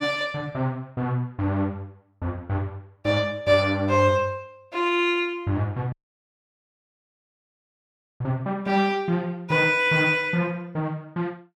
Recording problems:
dropout; at 6 s for 2.5 s

